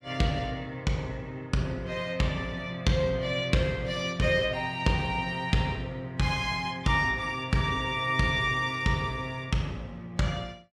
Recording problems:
none

